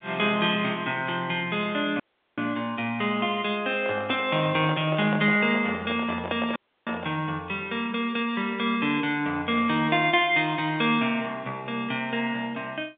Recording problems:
phone line; 260 Hz to 3.7 kHz, G.711
dropout; at 2 s and at 6.5 s
handling noise; from 4 to 7 s; peak -3 dB vs average level

